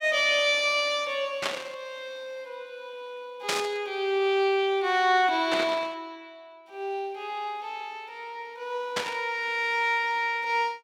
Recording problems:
static burst; 4 times, first at 1.5 s; peak +3 dB vs average level

